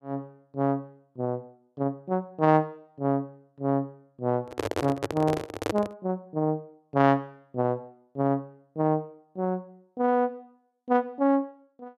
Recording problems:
microphone handling noise; from 4.5 to 6 s; peak +3 dB vs average level

